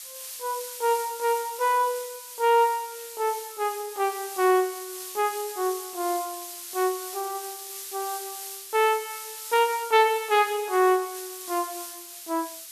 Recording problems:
background hiss; slope +5 dB per octave, SNR 11 dB

